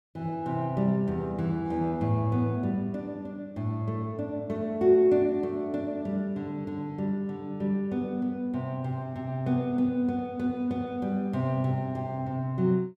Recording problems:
none

